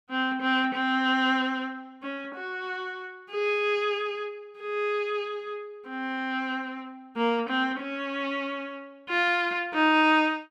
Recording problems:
none

